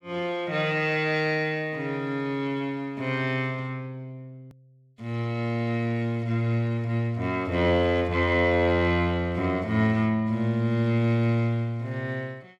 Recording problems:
edit click; at 4.5 s

